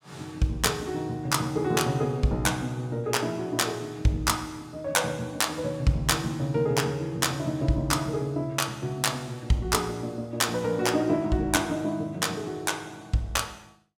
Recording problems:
none

